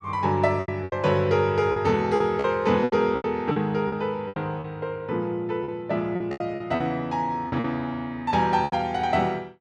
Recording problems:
packet loss; 11% of the sound replaced, filled with repeated pitch periods

